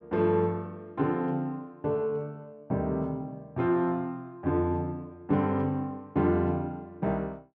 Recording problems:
none

